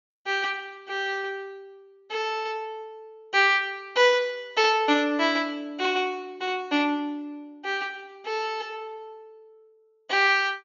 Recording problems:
treble missing; nothing above 7.1 kHz

